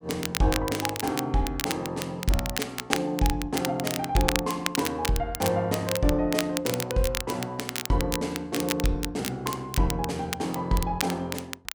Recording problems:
crackle; vinyl, SNR 5 dB

